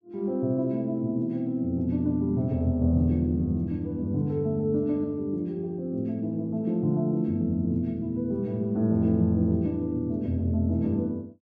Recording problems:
none

